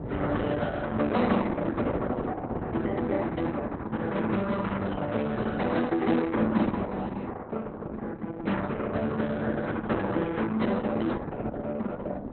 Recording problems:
lossy codec; Opus, log-spectral distance 4 dB, nothing above 4 kHz
wind noise; below 500 Hz, SNR 8 dB

